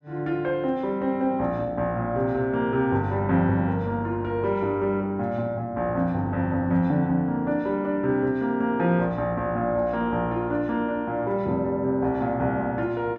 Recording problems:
none

